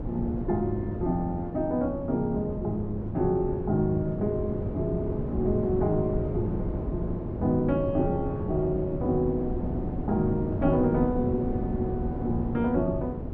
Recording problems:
wind noise; below 290 Hz, SNR 5 dB

